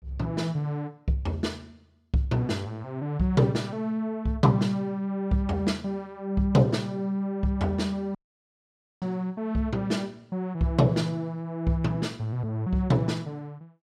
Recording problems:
dropout; at 8 s for 1 s

